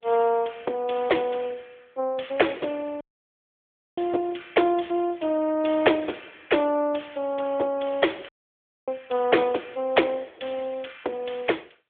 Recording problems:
phone line; 280 Hz to 3.5 kHz, AMR-NB
dropout; at 3 s for 1 s and at 8.5 s for 0.5 s

